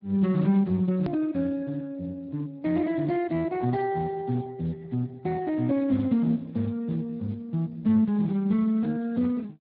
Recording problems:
low-pass filter; nothing above 4.4 kHz
codec artefacts; Speex, log-spectral distance 2 dB
edit click; at 1 s

